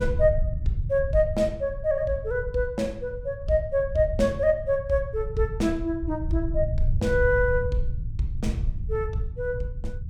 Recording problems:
low-frequency rumble; below 92 Hz, SNR 6 dB

